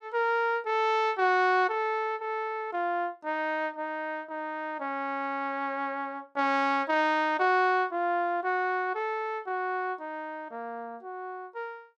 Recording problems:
none

